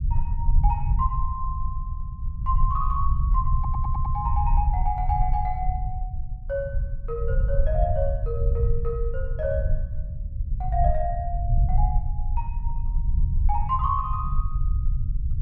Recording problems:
rumble; below 70 Hz, SNR -3 dB
stutter; at 3.5 s

